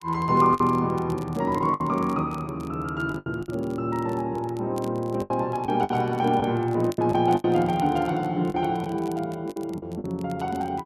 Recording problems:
crackling; vinyl, SNR 26 dB
lost packets; 8% of the sound replaced, filled with the last packet

